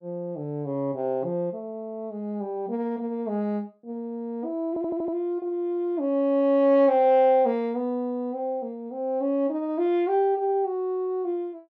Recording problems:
audio stuttering; at 4.5 s

